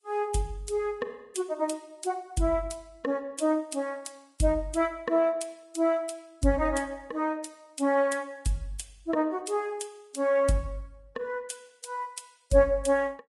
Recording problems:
codec artefacts; Vorbis, log-spectral distance 3 dB, nothing above 10.7 kHz

